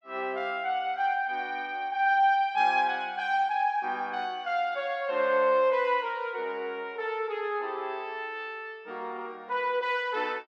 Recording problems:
none

